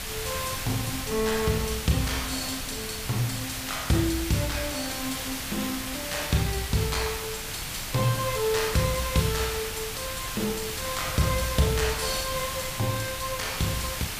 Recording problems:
hiss; slope 0 dB per octave, SNR 4 dB
wind noise; below 140 Hz, SNR 14 dB
crackling; vinyl, SNR 27 dB

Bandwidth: 15 kHz